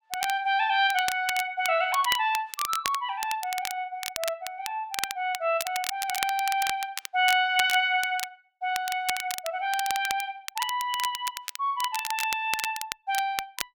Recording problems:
crackling; vinyl, SNR 7 dB

